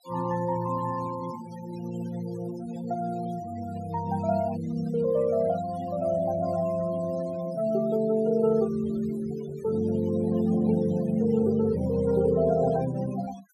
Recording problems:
denoising artefacts; signal-to-artefact ratio 18 dB

